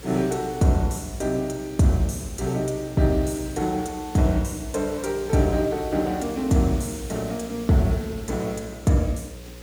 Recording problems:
electrical hum; 60 Hz, harmonics up to 540 Hz, SNR 19 dB
hiss; slope 0 dB per octave, SNR 20 dB

